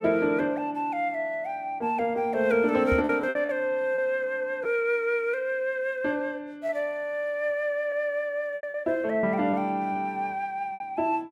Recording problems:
lost packets; 4% of the sound replaced, filled with repeated pitch periods
microphone bump; at 3 s; peak 0 dB vs average level

